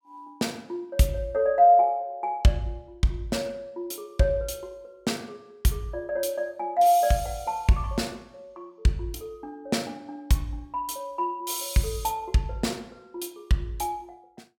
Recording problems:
none

